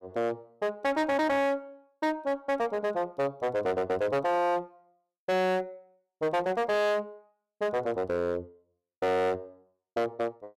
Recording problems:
distortion; hard clipping, signal-to-distortion ratio 6 dB

